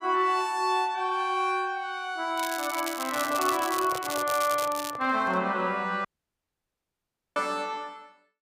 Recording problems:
crackling; from 2.5 to 5 s; loose cable, SNR 8 dB
handling noise; from 3 to 5.5 s; peak -7 dB vs average level
audio cutting out; at 6 s for 1.5 s

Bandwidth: 15.5 kHz